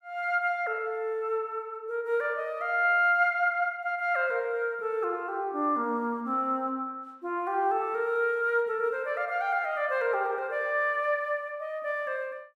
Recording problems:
none

